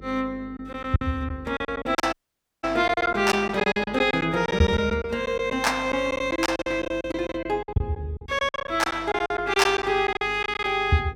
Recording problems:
hum; 50 Hz, harmonics up to 500 Hz, SNR 20 dB
lost packets; 14% of the sound replaced, filled with silence
audio cutting out; at 2 s for 0.5 s

